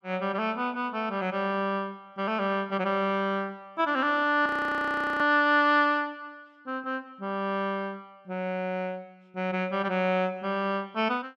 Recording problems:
frozen audio; at 4.5 s for 0.5 s

